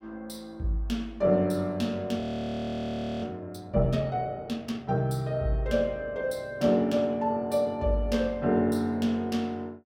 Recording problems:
audio freezing; at 2 s for 1 s

